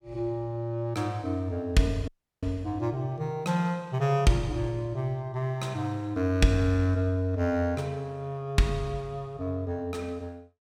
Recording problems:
dropout; at 2 s

